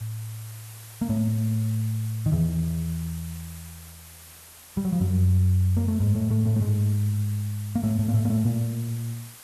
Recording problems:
hiss; slope 0 dB per octave, SNR 19 dB

